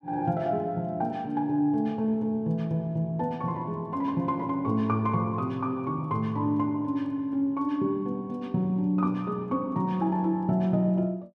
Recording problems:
none

